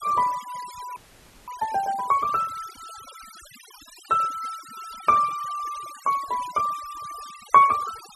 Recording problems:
noise reduction artefacts; signal-to-artefact ratio 19 dB
audio freezing; at 1 s for 0.5 s

